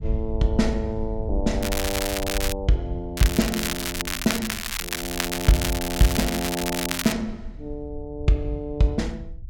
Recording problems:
low-frequency rumble; below 72 Hz, SNR 10 dB
crackling; at 1.5 s and from 3 to 7 s; loose cable, SNR 2 dB

